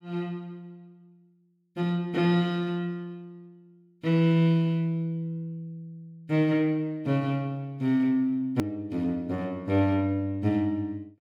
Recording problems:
edit click; at 8.5 s

